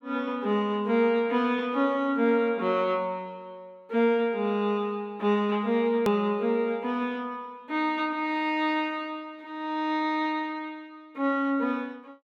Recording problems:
click at an edit; at 6 s

